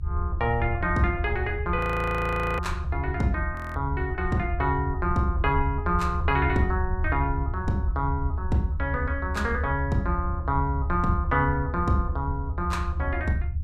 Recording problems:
low-frequency rumble; below 80 Hz, SNR 3 dB
frozen audio; at 2 s for 1 s and at 3.5 s

